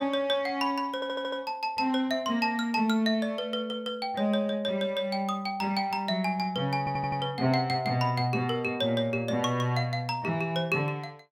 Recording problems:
stutter; at 1 s and at 7 s

